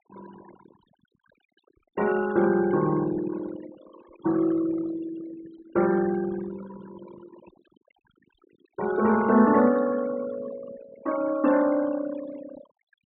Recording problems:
treble missing; nothing above 4 kHz
denoising artefacts; signal-to-artefact ratio 16 dB

